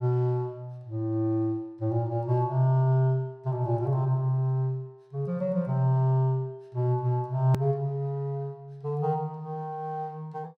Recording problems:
click at an edit; at 7.5 s

